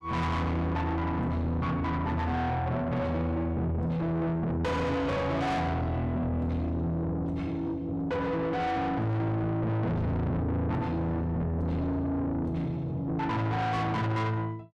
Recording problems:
distortion; soft clipping, signal-to-distortion ratio 5 dB

